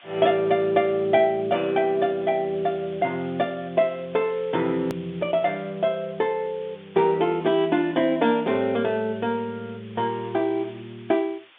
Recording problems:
telephone audio; 150 Hz to 3.6 kHz, G.711
background hiss; SNR 25 dB
hard cut with a click; at 5 s

